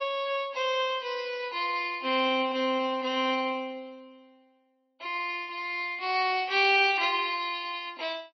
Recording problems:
lossy compression; MP3, log-spectral distance 3 dB, nothing above 4.9 kHz

